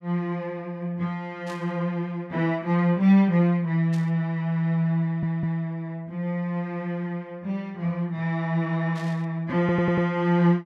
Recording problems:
burst of static; at 1.5 s, at 4 s and at 9 s; peak -14 dB vs average level
stutter; at 5 s and at 9.5 s

